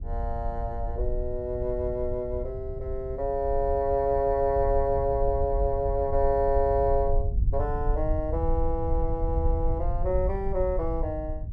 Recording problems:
rumble; below 68 Hz, SNR 4 dB

